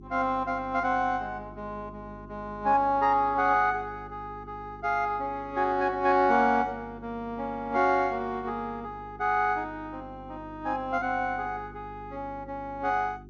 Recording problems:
lossy codec; MP2, log-spectral distance 2 dB, nothing above 6.3 kHz
electrical hum; 50 Hz, harmonics up to 400 Hz, SNR 19 dB

